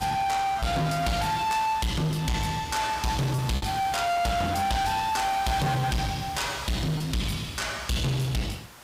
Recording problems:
distorted audio; soft clipping, signal-to-distortion ratio 7 dB
hiss; SNR 18 dB
packet loss; 1.6% of the sound replaced, filled with repeated pitch periods

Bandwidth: 15.5 kHz